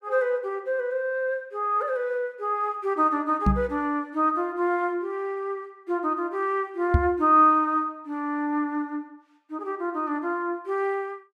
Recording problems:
microphone bump; at 3.5 s and at 7 s; peak +8 dB vs average level

